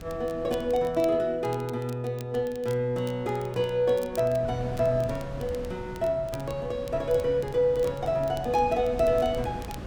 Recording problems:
wind noise; below 340 Hz, SNR 14 dB
crackle; vinyl, SNR 23 dB

